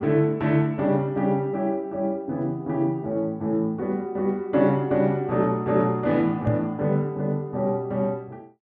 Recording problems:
microphone bump; at 6.5 s; peak +3 dB vs average level

